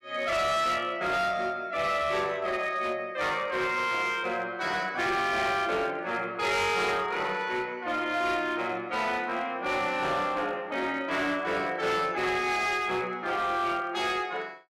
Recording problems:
distorted audio; hard clipping, signal-to-distortion ratio 10 dB

